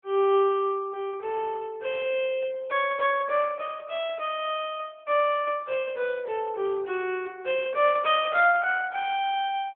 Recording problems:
phone line; 260 Hz to 3.5 kHz, AMR-NB

